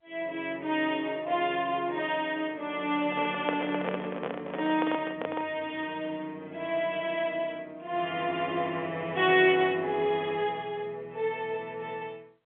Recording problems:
telephone audio; 240 Hz to 3.5 kHz, G.711
handling noise; from 3 to 5.5 s; peak +2 dB vs average level

